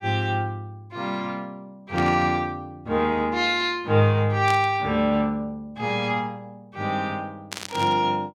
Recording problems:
static burst; at 2 s, at 4.5 s and at 7.5 s; peak -4 dB vs average level

